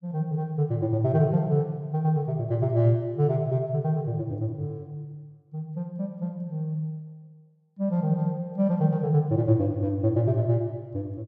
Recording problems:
none

